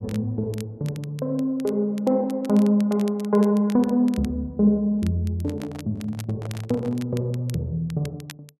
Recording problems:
crackle; vinyl, SNR 23 dB
microphone handling noise; from 5.5 to 7 s; peak -11 dB vs average level

